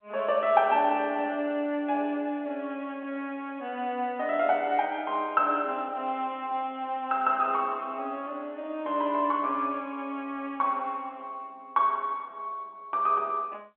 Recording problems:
telephone audio; 170 Hz to 3.3 kHz, G.711

